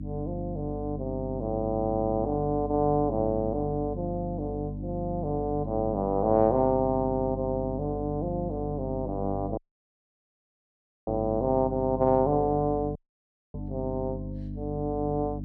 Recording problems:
mains hum; 50 Hz, harmonics up to 300 Hz, SNR 8 dB
audio cutting out; at 9.5 s for 1.5 s and at 13 s for 0.5 s

